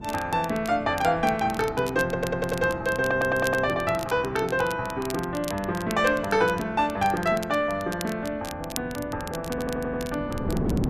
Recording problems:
wind noise; below 330 Hz, SNR 13 dB
crackle; vinyl, SNR 16 dB
stutter; at 2 s, at 3 s and at 9.5 s

